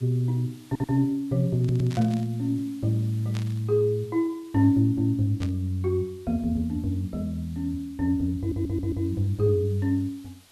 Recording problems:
background hiss; slope 0 dB per octave, SNR 28 dB
audio stuttering; at 0.5 s, at 1.5 s and at 8.5 s
static burst; at 1.5 s, at 3.5 s and at 5.5 s; peak -10 dB vs average level

